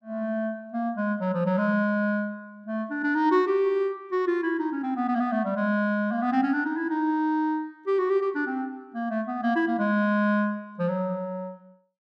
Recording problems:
none

